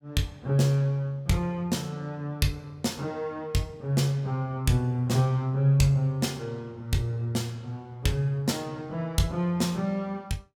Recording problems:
none

